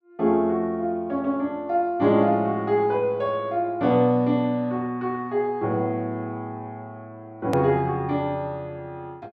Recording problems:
hard cut with a click; at 7.5 s

